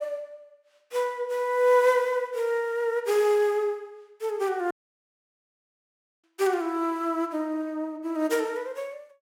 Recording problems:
dropout; at 4.5 s for 1.5 s

